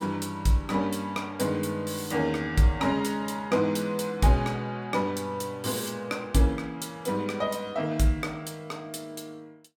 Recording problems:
none

